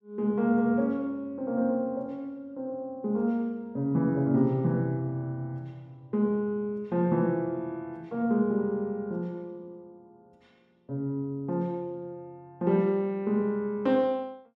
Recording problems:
none

